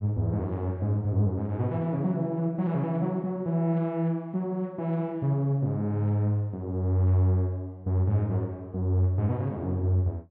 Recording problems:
none

